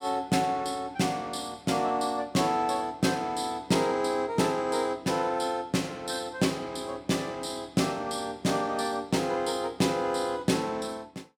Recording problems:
none

